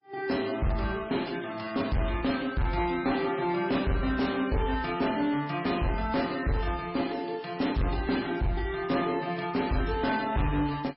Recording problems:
lossy codec; MP3, log-spectral distance 4 dB, nothing above 5.2 kHz
distortion; hard clipping, signal-to-distortion ratio 10 dB

